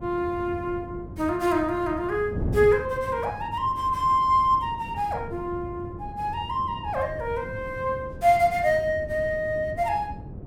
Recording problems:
wind noise; below 230 Hz, SNR 12 dB

